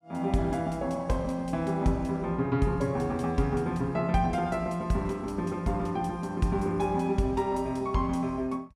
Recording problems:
none

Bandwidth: 14.5 kHz